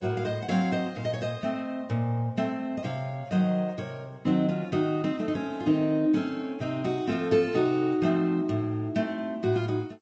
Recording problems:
lossy codec; G.722, then Vorbis, log-spectral distance 2 dB, nothing above 7.8 kHz

